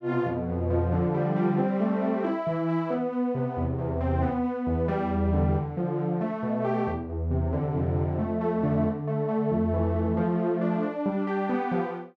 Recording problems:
none

